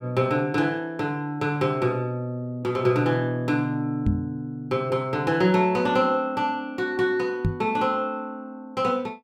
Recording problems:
microphone thump; at 4 s and at 7.5 s; peak +4 dB vs average level

